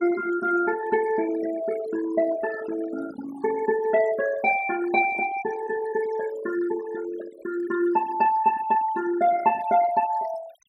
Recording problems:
denoising artefacts; signal-to-artefact ratio 14 dB

